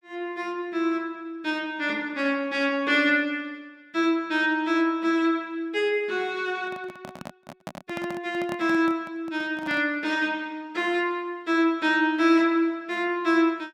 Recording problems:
handling noise; from 6.5 to 10 s; peak -6 dB vs average level

